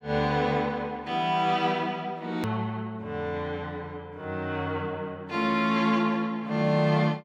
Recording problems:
edit click; at 2.5 s

